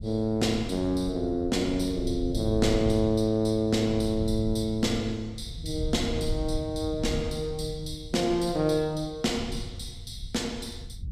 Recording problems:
low-frequency rumble; below 100 Hz, SNR 10 dB

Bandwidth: 15 kHz